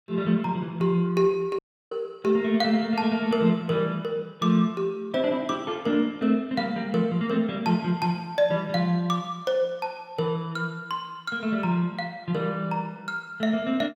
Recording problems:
dropout; at 1.5 s

